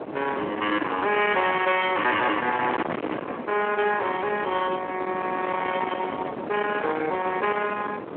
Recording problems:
telephone audio; 240 Hz to 3.1 kHz, Speex
distortion; soft clipping, signal-to-distortion ratio 9 dB
wind on the microphone; below 1.2 kHz, SNR 8 dB

